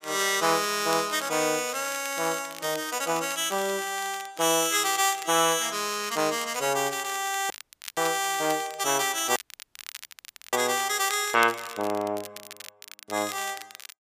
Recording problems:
crackle; vinyl, SNR 16 dB
dropout; at 7.5 s and at 9.5 s for 1 s

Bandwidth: 15 kHz